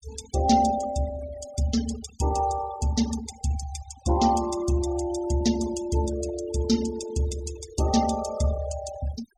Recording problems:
denoising artefacts; signal-to-artefact ratio 13 dB

